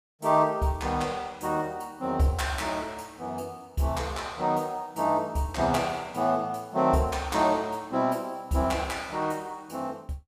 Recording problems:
none

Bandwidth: 15.5 kHz